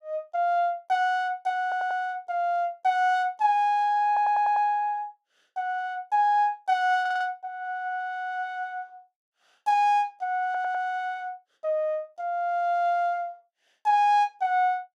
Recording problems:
audio stuttering; 4 times, first at 1.5 s

